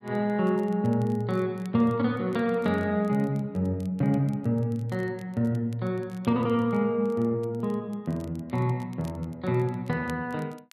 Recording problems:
crackle; vinyl, SNR 30 dB

